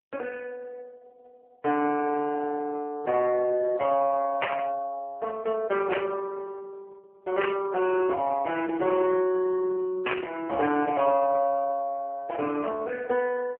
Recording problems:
telephone audio; 320 Hz to 2.9 kHz, AMR-NB
static burst; 4 times, first at 4.5 s; peak +4 dB vs average level

